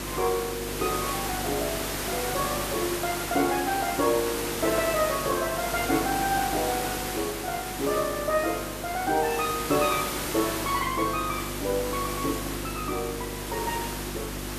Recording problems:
mains hum; 50 Hz, harmonics up to 350 Hz, SNR 11 dB
hiss; slope -3 dB per octave, SNR 3 dB

